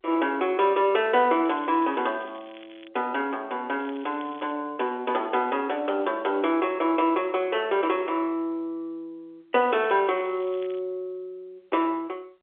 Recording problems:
phone line; 280 Hz to 3.5 kHz, G.711
crackling; from 1.5 to 3 s, at 4 s and from 9.5 to 11 s; loose cable, SNR 25 dB

